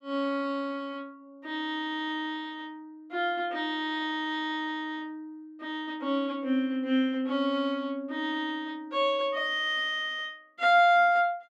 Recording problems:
none

